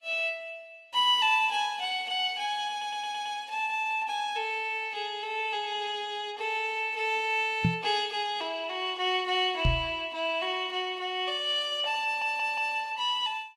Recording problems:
lossy compression; Vorbis, log-spectral distance 2 dB, nothing above 12.7 kHz
stutter; at 2.5 s and at 12 s
microphone bump; at 7.5 s and at 9.5 s; peak +6 dB vs average level

